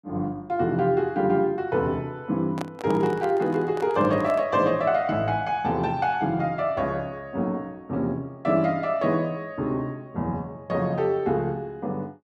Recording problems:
handling noise; from 2.5 to 4.5 s; peak -4 dB vs average level

